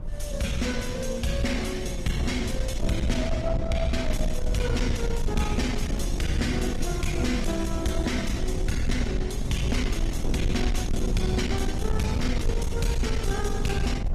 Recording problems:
lossy compression; Opus, log-spectral distance 3 dB, nothing above 14.7 kHz
distortion; soft clipping, signal-to-distortion ratio 12 dB
low-frequency rumble; below 76 Hz, SNR 3 dB

